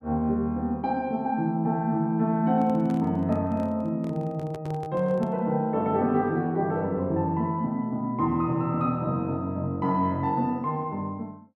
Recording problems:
microphone handling noise; from 2.5 to 5.5 s; peak -10 dB vs average level

